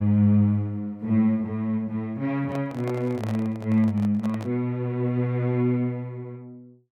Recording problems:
handling noise; from 2.5 to 4.5 s; peak -8 dB vs average level

